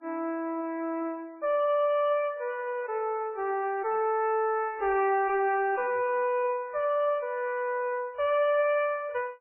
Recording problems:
lossy compression; MP3, log-spectral distance 2 dB, nothing above 2.4 kHz
distortion; soft clipping, signal-to-distortion ratio 11 dB

